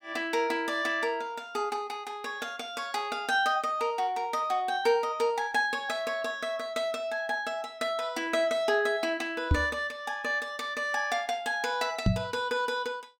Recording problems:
microphone bump; at 9.5 s and at 12 s; peak +8 dB vs average level

